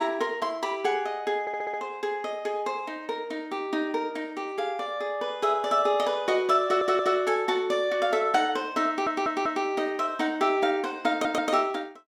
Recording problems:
stutter; 4 times, first at 1.5 s

